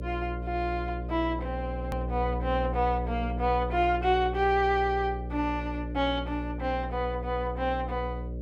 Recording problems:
hum; 60 Hz, harmonics up to 600 Hz, SNR 6 dB
edit click; at 2 s

